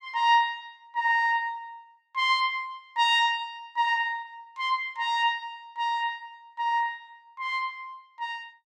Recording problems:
none

